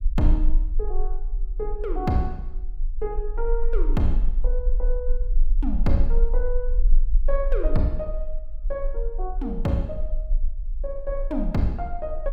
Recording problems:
low-frequency rumble; below 34 Hz, strongest tone 22 Hz, SNR -1 dB

